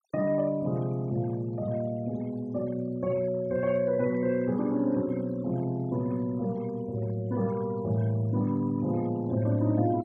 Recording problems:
denoising artefacts; signal-to-artefact ratio 23 dB

